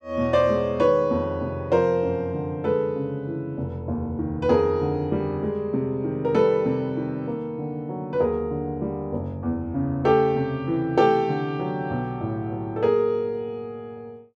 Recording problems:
none

